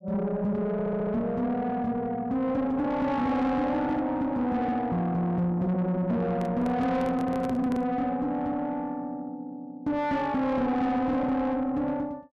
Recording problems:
distorted audio; soft clipping, signal-to-distortion ratio 10 dB
audio stuttering; at 0.5 s
microphone handling noise; from 6.5 to 8 s; peak -4 dB vs average level

